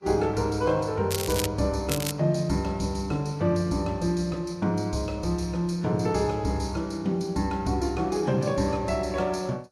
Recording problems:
lossy codec; Vorbis, log-spectral distance 3 dB, nothing above 11.3 kHz
crackling; at 1 s and at 2 s; loose cable, SNR 6 dB

